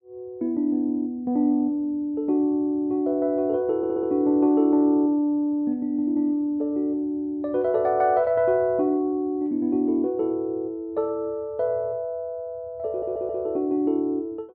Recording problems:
stutter; at 4 s and at 13 s

